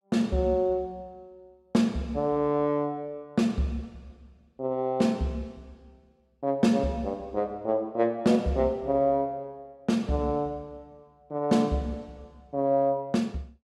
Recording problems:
none

